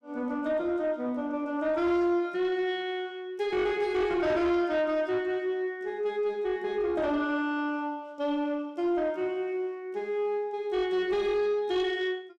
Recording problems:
distorted audio; soft clipping, signal-to-distortion ratio 11 dB

